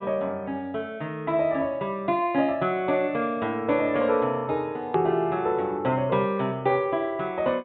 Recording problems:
treble cut off; nothing above 4 kHz
hard cut with a click; at 5 s

